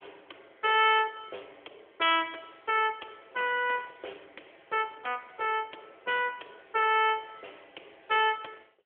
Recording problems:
phone line; 300 Hz to 3.4 kHz, AMR-NB

